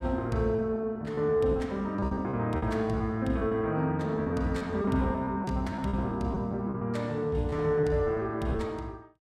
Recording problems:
packet loss; 11% of the sound replaced, filled with repeated pitch periods

